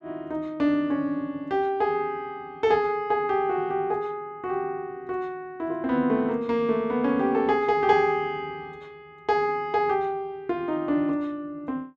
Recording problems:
none

